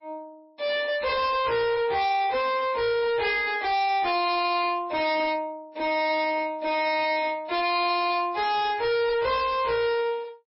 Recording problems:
codec artefacts; MP3, log-spectral distance 3 dB, nothing above 4.8 kHz
distorted audio; soft clipping, signal-to-distortion ratio 6 dB

